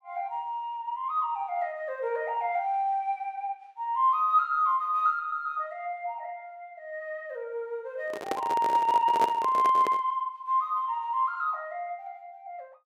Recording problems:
microphone handling noise; from 8 to 10 s; peak +1 dB vs average level

